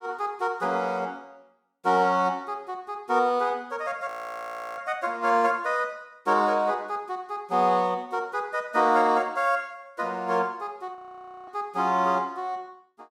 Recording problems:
frozen audio; at 4 s for 0.5 s and at 11 s for 0.5 s

